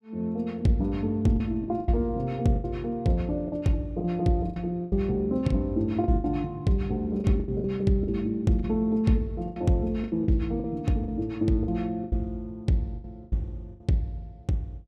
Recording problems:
lost packets; 10% of the sound replaced, filled with the last packet

